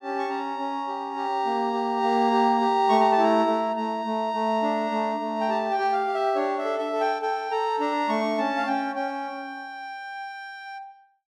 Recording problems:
none

